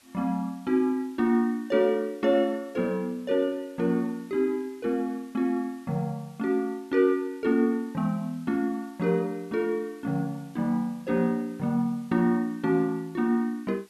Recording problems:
hiss; slope 0 dB per octave, SNR 30 dB

